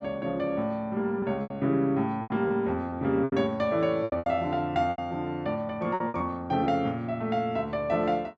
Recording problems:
packet loss; 8% of the sound replaced, filled with repeated pitch periods

